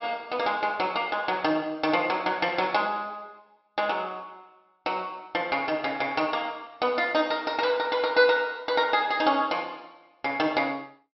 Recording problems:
treble cut off; nothing above 5.6 kHz

